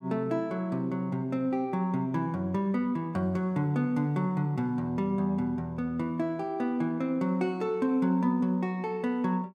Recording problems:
none

